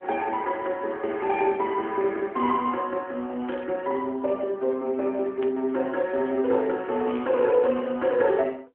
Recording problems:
telephone audio; 220 Hz to 3.9 kHz, AMR-NB
burst of static; at 3.5 s, at 5.5 s and at 7 s; peak -14 dB vs average level

